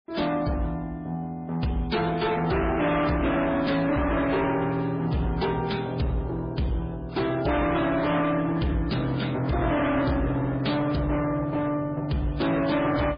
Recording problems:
codec artefacts; MP3, then MP3, log-spectral distance 3 dB, nothing above 4.4 kHz
distortion; hard clipping, signal-to-distortion ratio 7 dB

